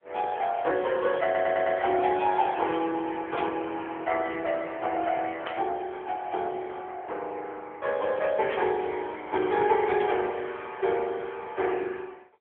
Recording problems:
telephone audio; 320 Hz to 3.4 kHz, AMR-NB
audio stuttering; at 1 s
burst of static; 4 times, first at 3.5 s; peak -3 dB vs average level

